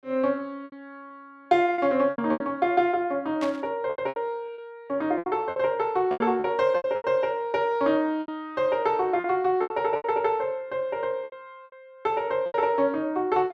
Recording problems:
lost packets; 11% of the sound replaced, filled with repeated pitch periods
burst of static; at 3.5 s; peak -7 dB vs average level

